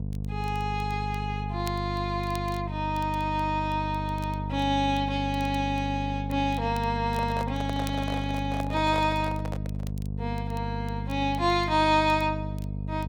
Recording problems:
hum; 50 Hz, harmonics up to 500 Hz, SNR 5 dB
crackle; vinyl, SNR 24 dB
microphone handling noise; from 7 to 10 s; peak -4 dB vs average level

